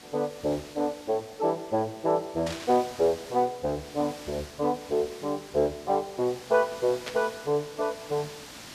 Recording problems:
background hiss; slope -1 dB per octave, SNR 16 dB
static burst; at 2.5 s and at 7 s; peak -3 dB vs average level

